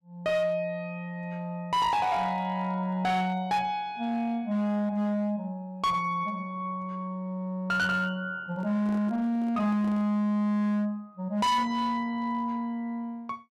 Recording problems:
distorted audio; hard clipping, signal-to-distortion ratio 11 dB
microphone handling noise; from 8.5 to 10 s; peak -10 dB vs average level

